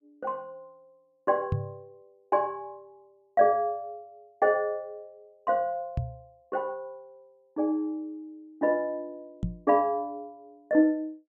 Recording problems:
microphone bump; at 1.5 s, at 6 s and at 9.5 s; peak +3 dB vs average level

